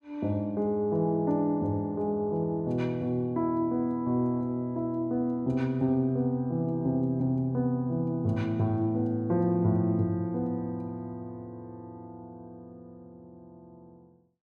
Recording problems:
none

